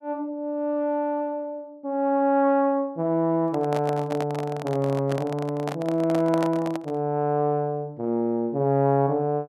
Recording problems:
microphone handling noise; from 3.5 to 7 s; peak -2 dB vs average level

